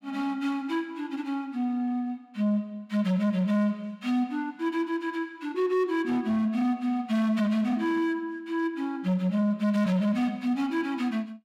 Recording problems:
distortion; hard clipping, signal-to-distortion ratio 11 dB

